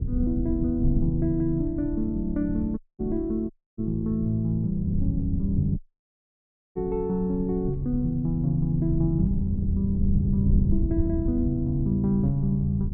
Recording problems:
rumble; below 120 Hz, SNR 5 dB
audio cutting out; at 3 s, at 3.5 s and at 6 s for 1 s

